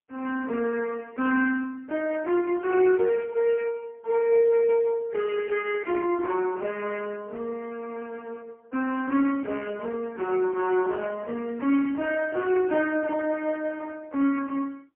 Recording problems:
phone line; 220 Hz to 2.6 kHz, AMR-NB, then MP3

